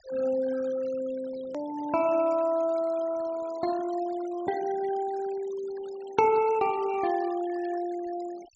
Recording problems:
treble missing; nothing above 7.8 kHz
denoising artefacts; signal-to-artefact ratio 20 dB
click at an edit; at 1.5 s

